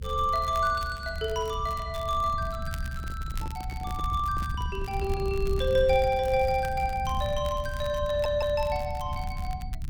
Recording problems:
rumble; below 92 Hz, SNR 8 dB
crackle; vinyl, SNR 21 dB
microphone handling noise; from 3 to 6 s; peak -9 dB vs average level
stutter; at 8 s

